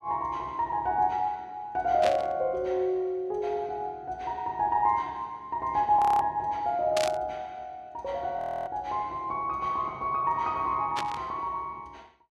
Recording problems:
burst of static; at 2 s, at 7 s and at 11 s; peak +1 dB vs average level
audio freezing; at 6 s and at 8.5 s

